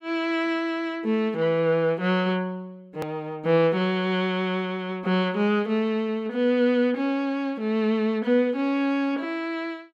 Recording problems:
hard cut with a click; at 3 s

